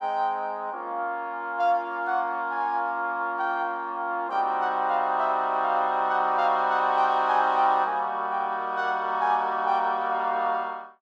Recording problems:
none

